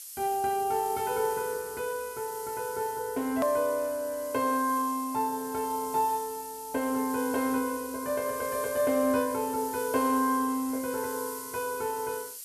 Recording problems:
background hiss; slope +6 dB per octave, SNR 11 dB
edit click; at 3.5 s

